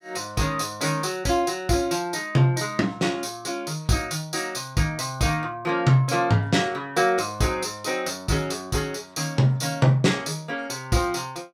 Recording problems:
none

